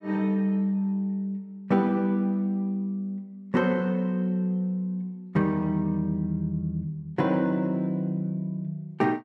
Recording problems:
none

